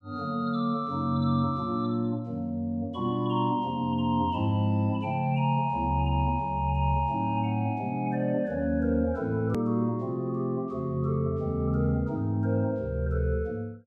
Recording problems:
edit click; at 9.5 s

